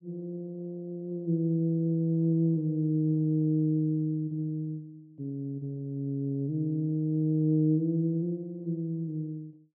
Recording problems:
none

